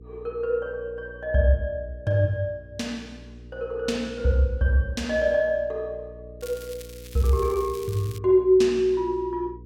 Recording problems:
hum; 60 Hz, harmonics up to 480 Hz, SNR 20 dB
crackling; from 6.5 to 8 s; loose cable, SNR 20 dB

